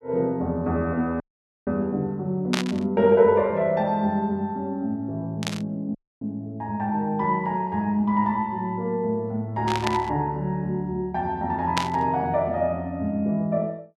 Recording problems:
dropout; at 1 s and at 6 s
burst of static; 4 times, first at 2.5 s; peak +3 dB vs average level

